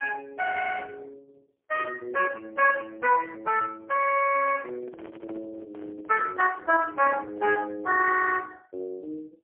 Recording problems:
phone line; 320 Hz to 2.7 kHz, AMR-NB, then MP3
microphone handling noise; from 4.5 to 7.5 s; peak -16 dB vs average level

